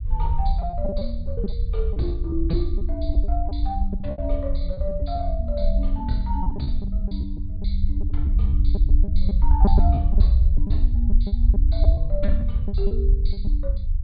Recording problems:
treble missing; nothing above 4.8 kHz
rumble; below 66 Hz, SNR -8 dB
lost packets; 10% of the sound replaced, filled with repeated pitch periods

